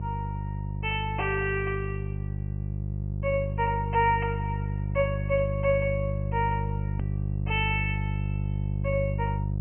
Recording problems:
treble missing; nothing above 3.1 kHz
hum; 50 Hz, harmonics up to 500 Hz, SNR 2 dB
edit click; at 7 s

